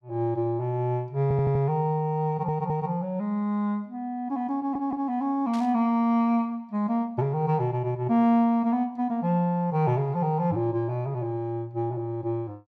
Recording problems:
stutter; at 1 s, at 2.5 s and at 4.5 s
burst of static; at 5.5 s; peak -13 dB vs average level

